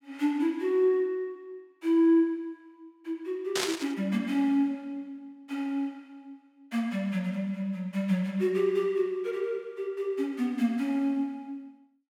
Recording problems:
burst of static; at 3.5 s; peak +3 dB vs average level

